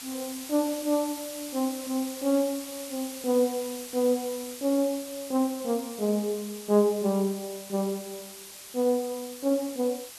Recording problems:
background hiss; slope +2 dB per octave, SNR 11 dB

